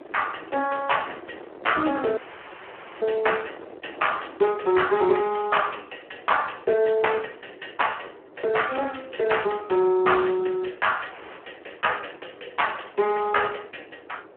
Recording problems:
telephone audio; 280 Hz to 3.2 kHz, Speex
wind noise; below 680 Hz, SNR 21 dB
dropout; at 2 s for 1 s and at 11 s

